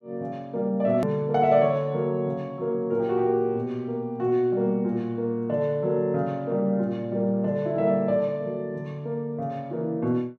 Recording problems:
hard cut with a click; at 1 s

